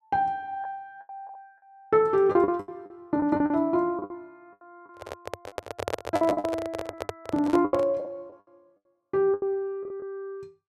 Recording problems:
lost packets; 14% of the sound replaced, filled with the last packet
microphone handling noise; from 5 to 8 s; peak +1 dB vs average level

